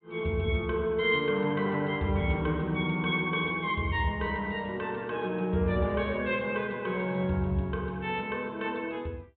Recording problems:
treble cut off; nothing above 4 kHz

